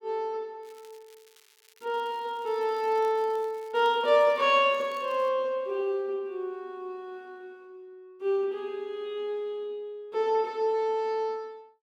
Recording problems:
crackling; from 0.5 to 5.5 s; loose cable, SNR 29 dB

